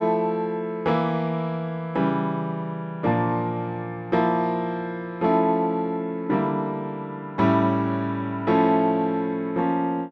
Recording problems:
none

